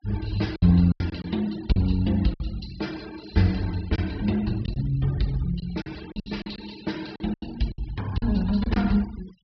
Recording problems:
treble missing; nothing above 5.5 kHz
noise reduction artefacts; signal-to-artefact ratio 19 dB
lost packets; 9% of the sound replaced, filled with silence

